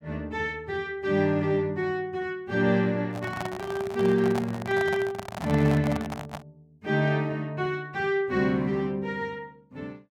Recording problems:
handling noise; from 3 to 6.5 s; peak -1 dB vs average level

